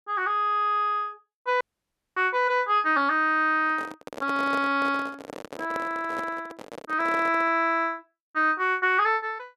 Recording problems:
audio cutting out; at 1.5 s for 0.5 s
microphone handling noise; from 3.5 to 7.5 s; peak -6 dB vs average level

